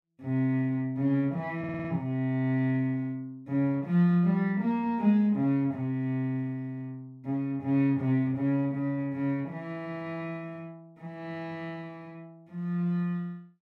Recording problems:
stutter; at 1.5 s

